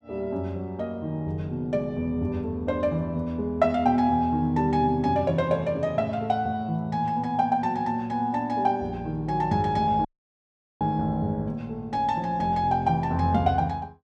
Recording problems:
dropout; at 10 s for 1 s

